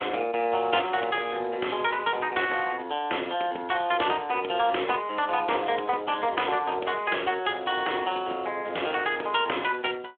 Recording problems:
telephone audio; 300 Hz to 3.4 kHz, Speex
crackling; at 1 s; loose cable, SNR 30 dB

